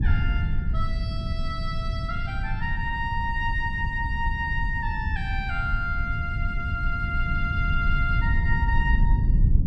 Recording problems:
rumble; below 96 Hz, SNR -2 dB

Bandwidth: 13.5 kHz